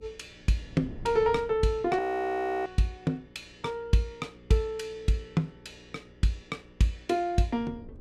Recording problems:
hum; 60 Hz, harmonics up to 540 Hz, SNR 26 dB
wind noise; below 200 Hz, SNR 18 dB
audio freezing; at 2 s for 0.5 s

